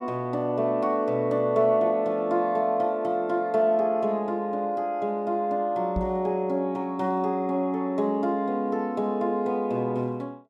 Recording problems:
knock on the microphone; at 6 s; peak -1 dB vs average level

